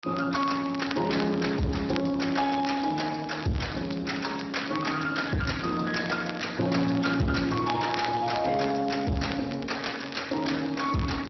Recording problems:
treble missing; nothing above 5.8 kHz
codec artefacts; Speex, log-spectral distance 6 dB
distortion; soft clipping, signal-to-distortion ratio 10 dB
crackling; vinyl, SNR 16 dB

